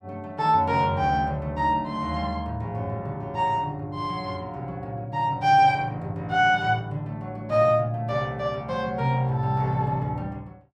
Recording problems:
none

